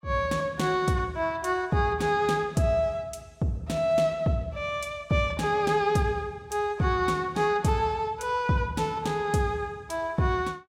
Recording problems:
none

